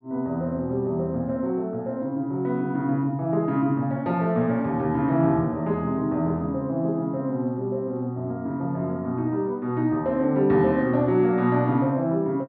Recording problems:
none

